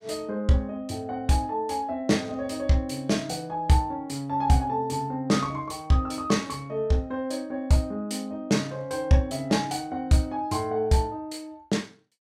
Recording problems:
none

